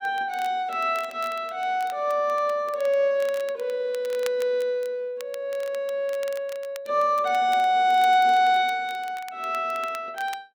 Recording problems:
crackling; vinyl, SNR 22 dB

